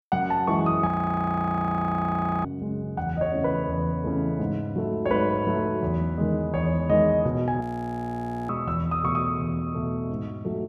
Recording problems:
frozen audio; at 1 s for 1.5 s and at 7.5 s for 1 s

